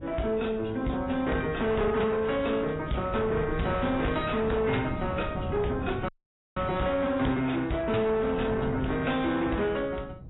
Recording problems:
lossy codec; AAC, then AAC, log-spectral distance 3 dB, nothing above 3.9 kHz
distortion; soft clipping, signal-to-distortion ratio 11 dB
wind on the microphone; below 260 Hz, SNR 10 dB
audio cutting out; at 6 s

